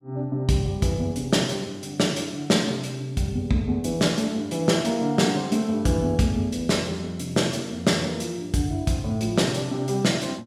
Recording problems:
none

